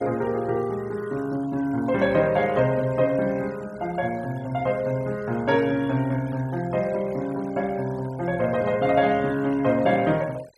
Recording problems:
noise reduction artefacts; signal-to-artefact ratio 22 dB

